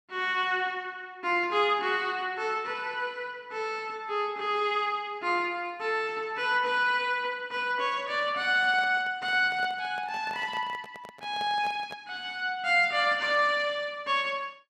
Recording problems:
handling noise; from 8.5 to 12 s; peak -11 dB vs average level

